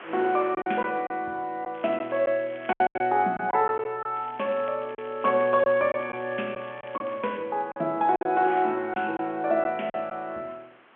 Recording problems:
telephone audio; 220 Hz to 3.3 kHz, G.711
wind on the microphone; below 2.3 kHz, SNR 23 dB
packet loss; 7% of the sound replaced, filled with silence
crackling; from 1.5 to 3 s and from 4 to 7.5 s; loose cable, SNR 24 dB

